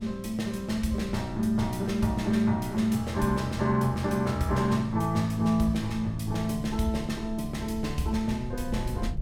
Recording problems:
low-frequency rumble; below 100 Hz, SNR 14 dB

